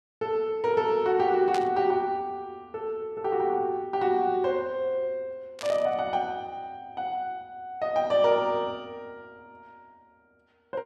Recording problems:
static burst; at 1.5 s and at 5.5 s; peak -5 dB vs average level

